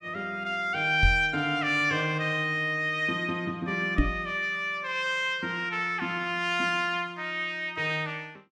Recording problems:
knock on the microphone; at 1 s and at 4 s; peak +6 dB vs average level

